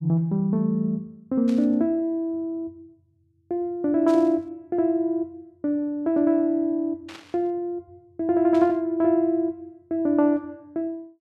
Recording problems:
burst of static; 4 times, first at 1.5 s; peak -14 dB vs average level

